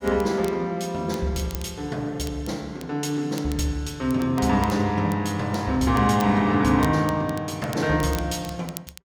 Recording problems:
crackle; vinyl, SNR 20 dB

